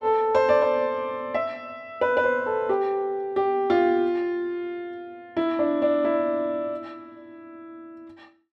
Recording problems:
none

